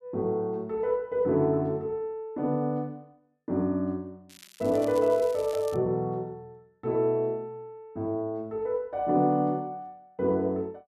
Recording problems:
crackling; from 4.5 to 6 s; loose cable, SNR 21 dB

